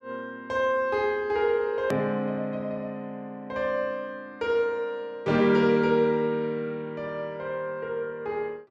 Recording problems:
hard cut with a click; at 2 s

